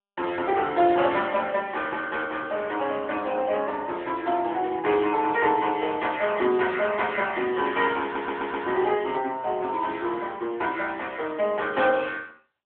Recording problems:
telephone audio; 280 Hz to 3.5 kHz, AMR-NB
stutter; at 8 s

